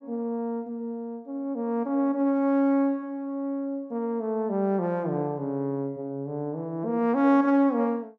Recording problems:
none

